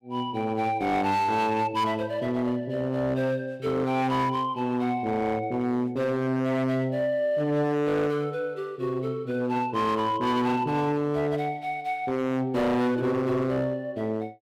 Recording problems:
distorted audio; hard clipping, signal-to-distortion ratio 7 dB

